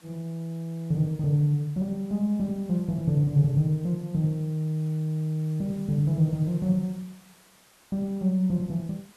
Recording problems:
hiss; slope -2 dB per octave, SNR 28 dB

